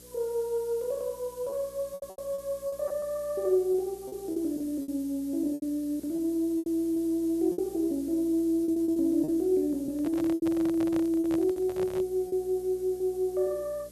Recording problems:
hum; 60 Hz, harmonics up to 600 Hz, SNR 24 dB
background hiss; slope +2 dB per octave, SNR 21 dB
lost packets; 9% of the sound replaced, filled with repeated pitch periods
microphone handling noise; from 10 to 12 s; peak -6 dB vs average level

